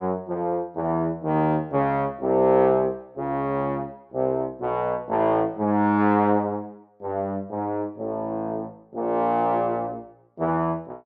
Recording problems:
none

